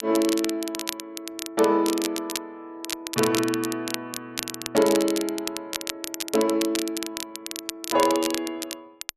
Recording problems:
crackle; vinyl, SNR 7 dB

